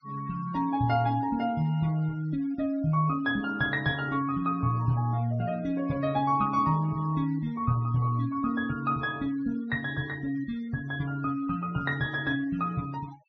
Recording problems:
treble missing; nothing above 6.2 kHz
denoising artefacts; signal-to-artefact ratio 23 dB

